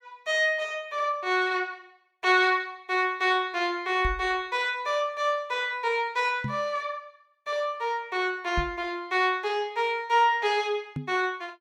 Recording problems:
microphone bump; 4 times, first at 4 s; peak -1 dB vs average level

